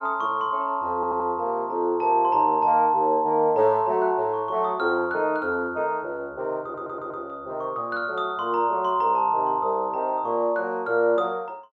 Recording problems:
stutter; at 1 s and at 6.5 s

